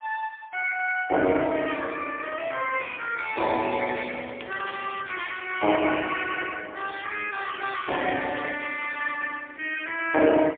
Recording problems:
telephone audio; 220 Hz to 3.5 kHz, AMR-NB, then MP3
crackle; from 3.5 to 5.5 s and from 8 to 9 s; loose cable, SNR 18 dB

